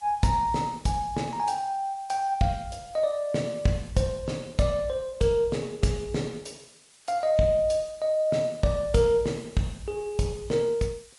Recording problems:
codec artefacts; MP3, log-spectral distance 4 dB, nothing above 11 kHz
hiss; slope +2 dB per octave, SNR 26 dB

